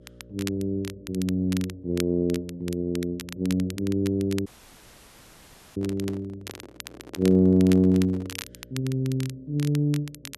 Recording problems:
electrical hum; 60 Hz, harmonics up to 600 Hz, SNR 28 dB
crackle; vinyl, SNR 16 dB
dropout; at 4.5 s for 1.5 s
handling noise; from 6 to 8.5 s; peak -11 dB vs average level

